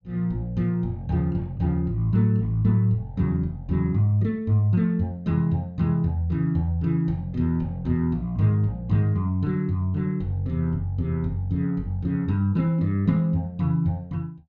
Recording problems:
none

